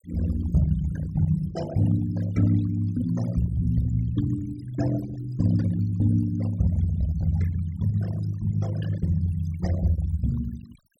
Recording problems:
noise reduction artefacts; signal-to-artefact ratio 16 dB

